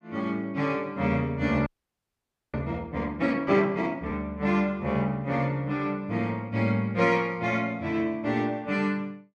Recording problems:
audio freezing; at 1.5 s for 1 s

